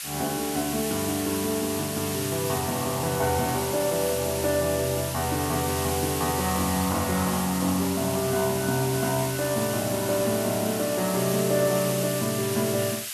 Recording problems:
background hiss; SNR 5 dB

